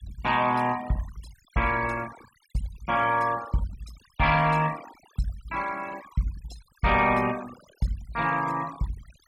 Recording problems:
noise reduction artefacts; signal-to-artefact ratio 17 dB

